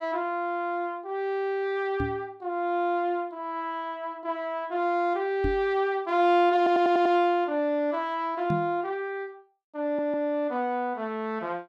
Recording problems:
microphone bump; at 2 s, at 5.5 s and at 8.5 s; peak +1 dB vs average level
audio stuttering; at 6.5 s and at 10 s

